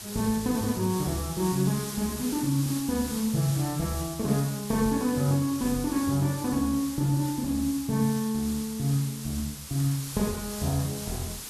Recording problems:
hiss; slope 0 dB per octave, SNR 10 dB

